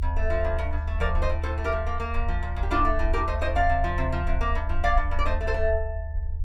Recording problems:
low-frequency rumble; below 76 Hz, SNR 2 dB

